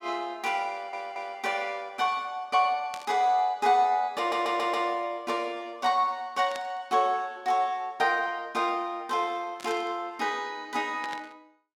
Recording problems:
audio stuttering; at 0.5 s and at 4 s
burst of static; 4 times, first at 3 s; peak -8 dB vs average level

